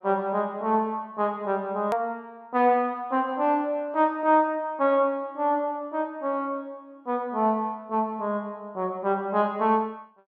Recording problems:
click at an edit; at 2 s

